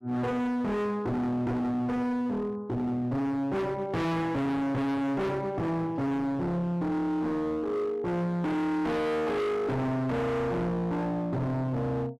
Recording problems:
distortion; hard clipping, signal-to-distortion ratio 6 dB

